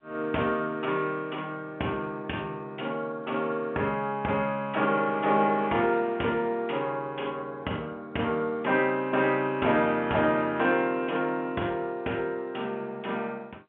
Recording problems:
telephone audio; 260 Hz to 3.3 kHz, G.711

